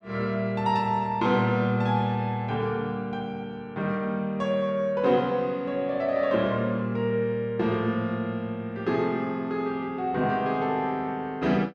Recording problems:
none

